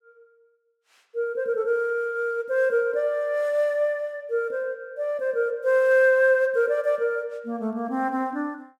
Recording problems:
none

